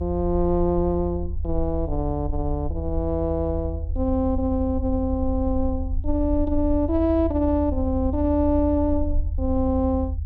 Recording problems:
rumble; below 80 Hz, SNR 5 dB

